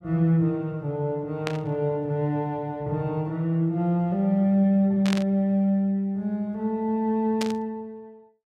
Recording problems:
burst of static; at 1.5 s, at 5 s and at 7.5 s; peak -2 dB vs average level

